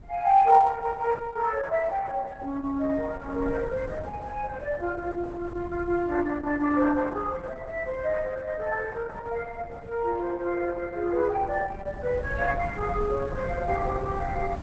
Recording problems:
lossy compression; Opus, log-spectral distance 3 dB, nothing above 7.8 kHz
wind on the microphone; below 180 Hz, SNR 14 dB

